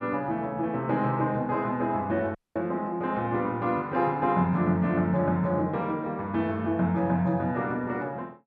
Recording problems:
audio cutting out; at 2.5 s

